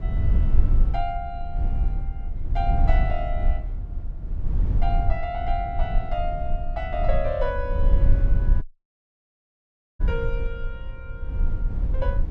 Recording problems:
rumble; below 58 Hz, strongest tone 24 Hz, SNR -5 dB
audio cutting out; at 8.5 s for 1.5 s

